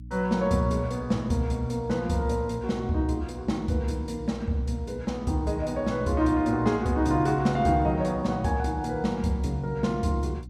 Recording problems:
hum; 60 Hz, harmonics up to 300 Hz, SNR 15 dB

